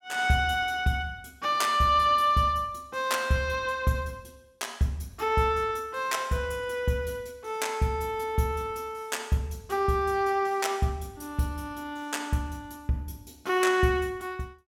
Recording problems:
none

